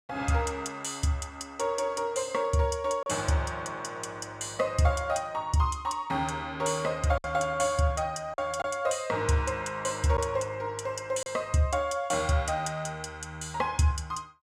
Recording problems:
lost packets; 1.3% of the sound replaced, filled with silence

